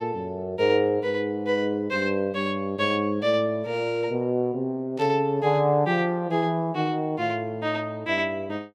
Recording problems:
static burst; at 5 s; peak -16 dB vs average level

